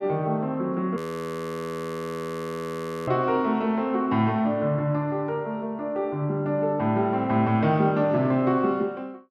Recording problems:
audio freezing; at 1 s for 2 s

